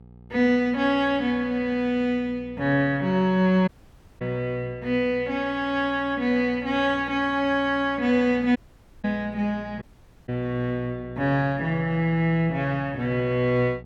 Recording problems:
mains hum; 60 Hz, harmonics up to 840 Hz, SNR 21 dB
audio cutting out; at 3.5 s for 0.5 s, at 8.5 s and at 10 s

